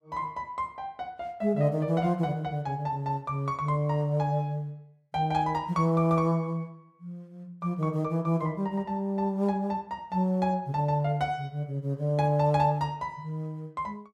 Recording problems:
none

